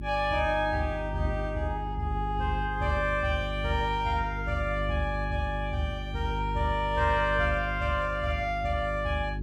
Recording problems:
electrical hum; 50 Hz, harmonics up to 400 Hz, SNR 6 dB

